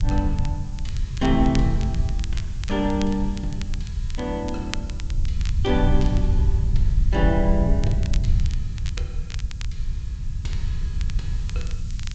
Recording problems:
treble cut off; nothing above 8 kHz
hiss; slope +4 dB per octave, SNR 24 dB
low-frequency rumble; below 78 Hz, SNR 0 dB
crackling; vinyl, SNR 15 dB

